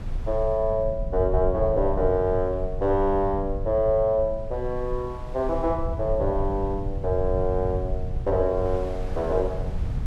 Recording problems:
rumble; below 82 Hz, strongest tone 24 Hz, SNR 7 dB
wind noise; below 830 Hz, SNR 21 dB

